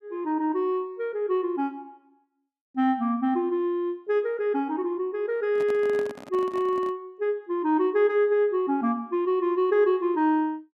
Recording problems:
handling noise; from 5.5 to 7 s; peak -9 dB vs average level

